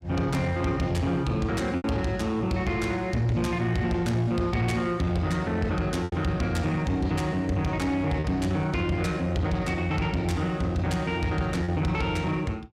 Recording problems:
distorted audio; soft clipping, signal-to-distortion ratio 12 dB
packet loss; 1.9% of the sound replaced, filled with repeated pitch periods

